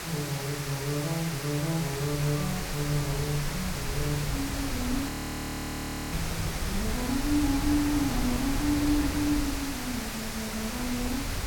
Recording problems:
hiss; slope -2 dB per octave, SNR 3 dB
wind on the microphone; below 190 Hz, SNR 5 dB
audio freezing; at 5 s for 1 s

